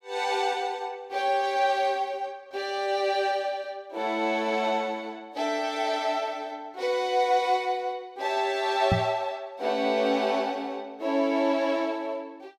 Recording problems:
knock on the microphone; at 9 s; peak +6 dB vs average level

